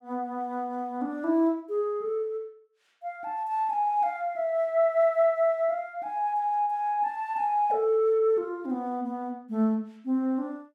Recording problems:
none

